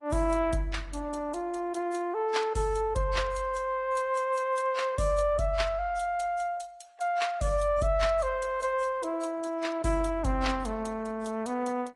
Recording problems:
lossy compression; Opus, then AAC, log-spectral distance 3 dB, nothing above 10.7 kHz

